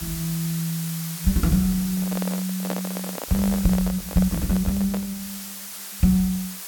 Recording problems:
hiss; slope +2 dB per octave, SNR 9 dB
microphone handling noise; from 2 to 5 s; peak -1 dB vs average level

